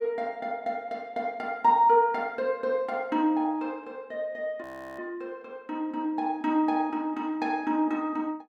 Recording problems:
frozen audio; at 4.5 s

